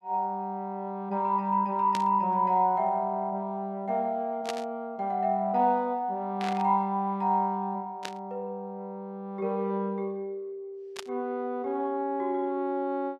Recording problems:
static burst; 5 times, first at 2 s; peak -2 dB vs average level

